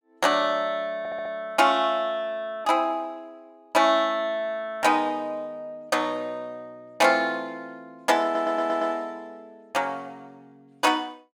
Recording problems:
audio stuttering; at 1 s and at 8 s

